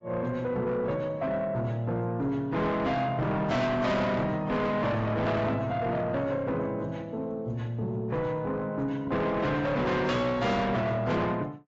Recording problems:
lossy compression; AAC, log-spectral distance 2 dB, nothing above 7.6 kHz
distorted audio; soft clipping, signal-to-distortion ratio 7 dB

